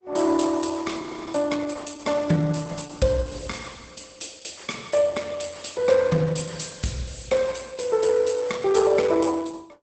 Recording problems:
codec artefacts; Opus, log-spectral distance 7 dB, nothing above 8.2 kHz
frozen audio; at 1 s

